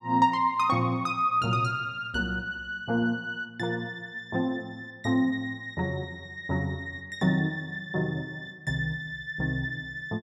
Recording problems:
none

